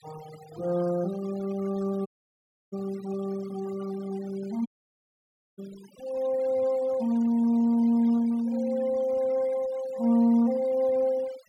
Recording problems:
noise reduction artefacts; signal-to-artefact ratio 23 dB
audio cutting out; at 2 s for 0.5 s and at 4.5 s for 1 s

